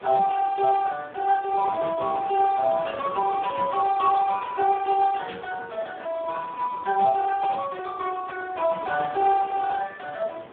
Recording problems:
telephone audio; 260 Hz to 2.1 kHz, Speex
wind on the microphone; below 1.3 kHz, SNR 17 dB

